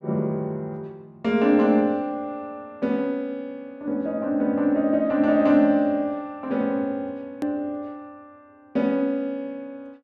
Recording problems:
hard cut with a click; at 7.5 s

